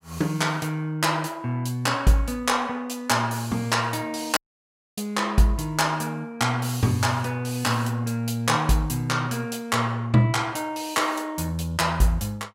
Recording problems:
audio cutting out; at 4.5 s for 0.5 s

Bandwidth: 16 kHz